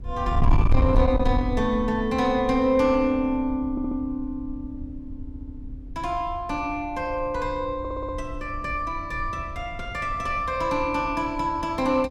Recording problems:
distorted audio; soft clipping, signal-to-distortion ratio 10 dB
wind noise; below 84 Hz, SNR 6 dB
audio stuttering; at 3.5 s, at 5 s and at 8 s

